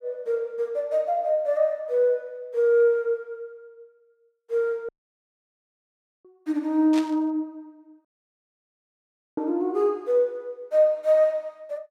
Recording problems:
audio cutting out; at 5 s for 1.5 s and at 8 s for 1.5 s
burst of static; at 7 s; peak -7 dB vs average level

